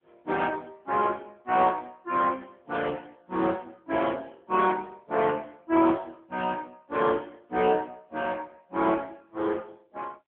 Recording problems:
telephone audio; 260 Hz to 3.4 kHz, AMR-NB

